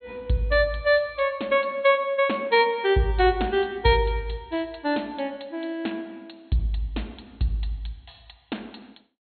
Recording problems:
treble cut off; nothing above 4.3 kHz

